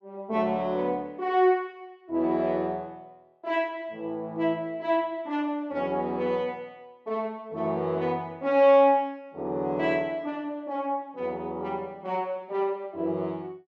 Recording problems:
none

